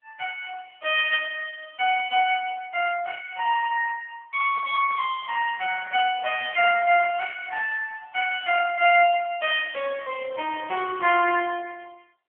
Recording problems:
phone line; 340 Hz to 3.1 kHz, AMR-NB
handling noise; from 4.5 to 7.5 s; peak -13 dB vs average level

